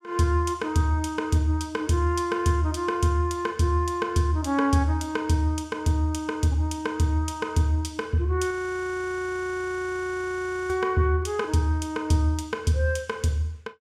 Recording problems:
frozen audio; at 8.5 s for 2 s

